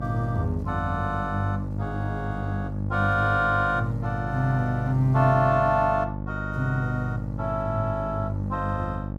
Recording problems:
hum; 50 Hz, harmonics up to 900 Hz, SNR 7 dB

